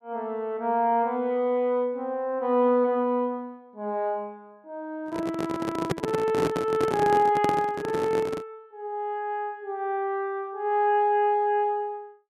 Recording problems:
handling noise; from 5 to 8.5 s; peak +4 dB vs average level

